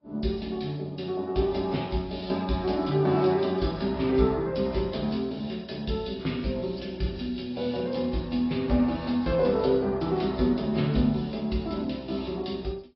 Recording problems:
treble missing; nothing above 5.2 kHz
lossy compression; AAC, log-spectral distance 3 dB

